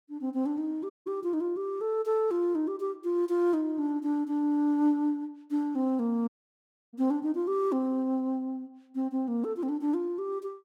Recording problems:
dropout; at 1 s and at 6.5 s for 0.5 s

